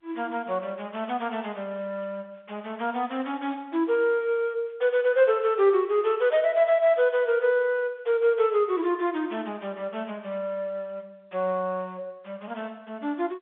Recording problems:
telephone audio; 300 Hz to 4 kHz, G.711

